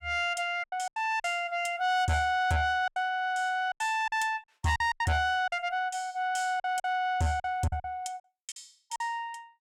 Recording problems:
distorted audio; soft clipping, signal-to-distortion ratio 10 dB
lost packets; 10% of the sound replaced, filled with silence

